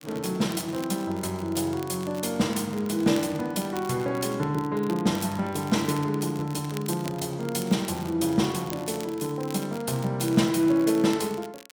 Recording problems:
crackling; vinyl, SNR 18 dB

